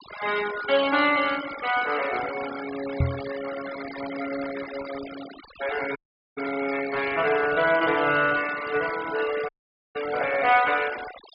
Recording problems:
treble missing; nothing above 5.1 kHz
noise reduction artefacts; signal-to-artefact ratio 12 dB
microphone bump; at 3 s; peak +4 dB vs average level
dropout; at 6 s and at 9.5 s

